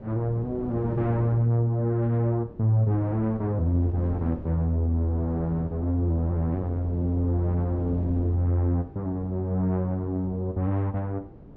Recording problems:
low-pass filter; nothing above 8 kHz
wind on the microphone; below 330 Hz, SNR 15 dB

